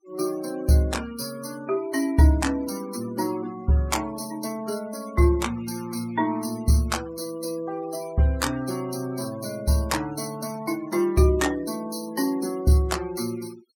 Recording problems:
noise reduction artefacts; signal-to-artefact ratio 20 dB

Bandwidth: 17 kHz